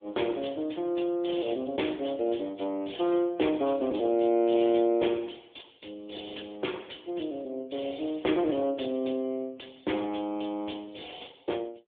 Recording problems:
telephone audio; 240 Hz to 3.5 kHz, AMR-NB

